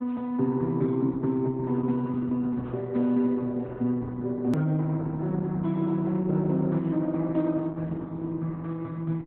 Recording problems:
lossy codec; Opus, log-spectral distance 2 dB, nothing above 13.1 kHz
hard cut with a click; at 4.5 s

